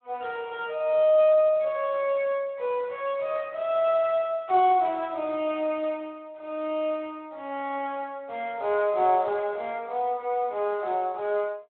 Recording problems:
phone line; 320 Hz to 3.7 kHz, Speex

